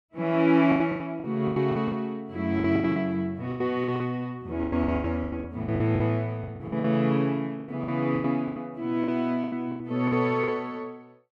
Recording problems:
lost packets; 17% of the sound replaced, filled with the last packet

